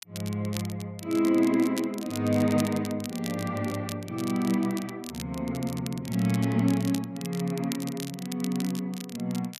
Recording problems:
crackling; vinyl, SNR 14 dB

